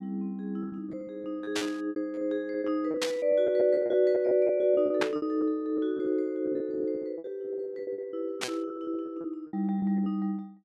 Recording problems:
lost packets; 16% of the sound replaced, filled with repeated pitch periods
static burst; 4 times, first at 1.5 s; peak +3 dB vs average level

